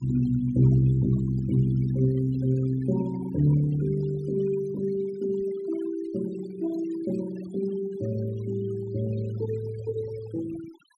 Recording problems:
denoising artefacts; signal-to-artefact ratio 18 dB

